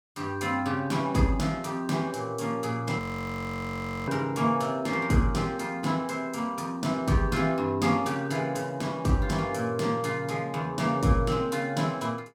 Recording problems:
audio freezing; at 3 s for 1 s

